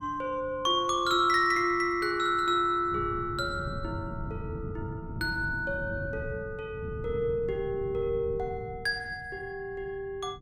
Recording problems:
wind on the microphone; below 170 Hz, SNR 11 dB

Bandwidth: 17 kHz